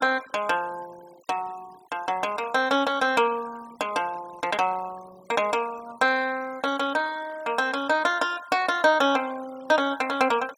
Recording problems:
noise reduction artefacts; signal-to-artefact ratio 22 dB

